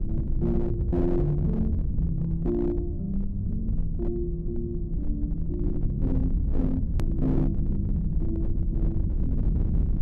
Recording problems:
distorted audio; hard clipping, signal-to-distortion ratio 12 dB
electrical hum; 50 Hz, harmonics up to 1.1 kHz, SNR 25 dB
low-frequency rumble; below 96 Hz, SNR 0 dB
hard cut with a click; at 7 s

